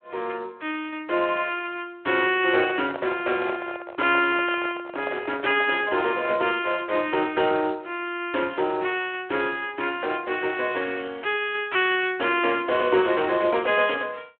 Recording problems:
phone line; 320 Hz to 3.3 kHz, Speex
handling noise; from 2.5 to 6.5 s; peak -4 dB vs average level

